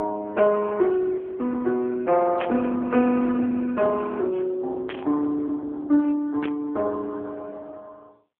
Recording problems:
telephone audio; 220 Hz to 2.5 kHz, AMR-NB
frozen audio; at 1 s
static burst; at 2.5 s, at 5 s and at 6.5 s; peak -2 dB vs average level

